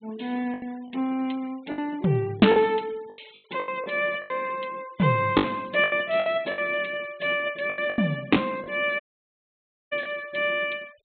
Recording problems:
treble missing; nothing above 4 kHz
denoising artefacts; signal-to-artefact ratio 26 dB
lost packets; 11% of the sound replaced, filled with the last packet
dropout; at 9 s for 1 s

